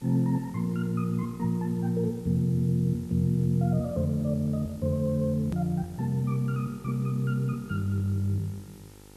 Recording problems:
hum; 50 Hz, harmonics up to 1.4 kHz, SNR 24 dB
background hiss; slope +1 dB per octave, SNR 27 dB
edit click; at 5.5 s

